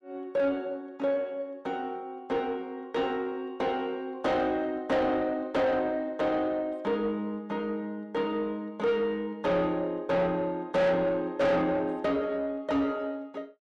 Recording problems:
distorted audio; soft clipping, signal-to-distortion ratio 7 dB

